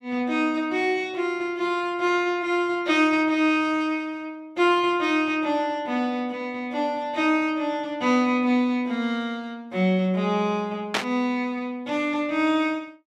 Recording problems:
burst of static; at 11 s; peak +4 dB vs average level

